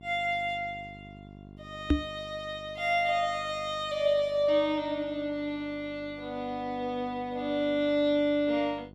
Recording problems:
electrical hum; 50 Hz, harmonics up to 800 Hz, SNR 21 dB
knock on the microphone; at 2 s; peak +9 dB vs average level

